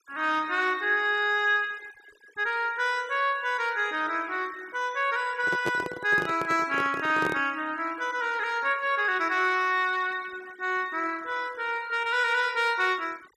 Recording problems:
denoising artefacts; signal-to-artefact ratio 23 dB
handling noise; from 5.5 to 7.5 s; peak 0 dB vs average level

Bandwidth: 14.5 kHz